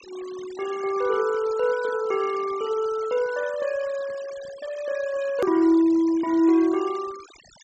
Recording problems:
treble missing; nothing above 8 kHz
noise reduction artefacts; signal-to-artefact ratio 20 dB
hard cut with a click; at 5.5 s

